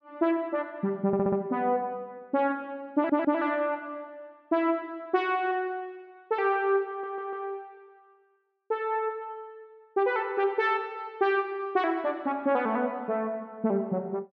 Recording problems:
audio stuttering; at 1 s, at 3 s and at 7 s

